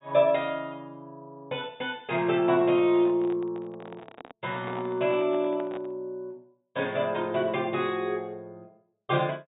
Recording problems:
treble missing; nothing above 4 kHz
handling noise; from 2.5 to 6 s; peak -8 dB vs average level

